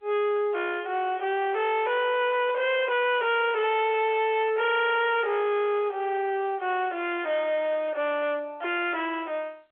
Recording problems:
telephone audio; 340 Hz to 3.4 kHz, G.711
distortion; hard clipping, signal-to-distortion ratio 7 dB

